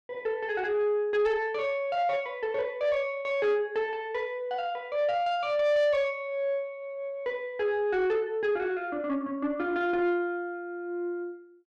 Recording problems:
distorted audio; soft clipping, signal-to-distortion ratio 12 dB

